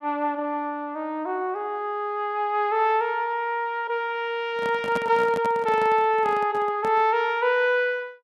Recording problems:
handling noise; from 4.5 to 7 s; peak -4 dB vs average level

